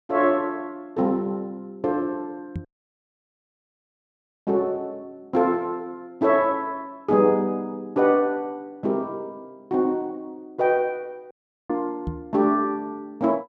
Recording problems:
microphone bump; at 2.5 s and at 12 s; peak -2 dB vs average level
audio cutting out; at 2.5 s for 2 s and at 11 s

